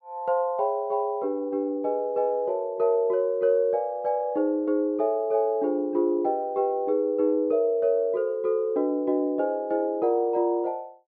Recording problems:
none

